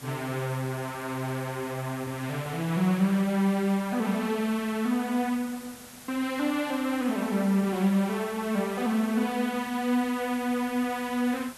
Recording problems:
hiss; slope -2 dB per octave, SNR 17 dB

